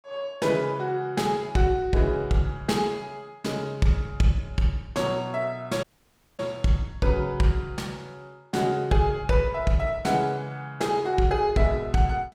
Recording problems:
dropout; at 6 s for 0.5 s

